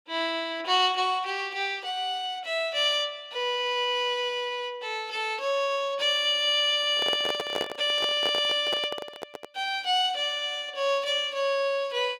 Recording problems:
microphone handling noise; from 7 to 9.5 s; peak -1 dB vs average level

